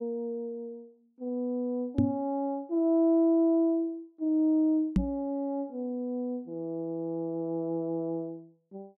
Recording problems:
microphone thump; at 2 s and at 5 s; peak +7 dB vs average level

